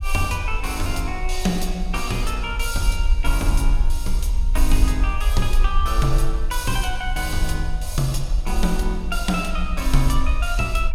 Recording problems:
low-frequency rumble; below 46 Hz, strongest tone 20 Hz, SNR 0 dB

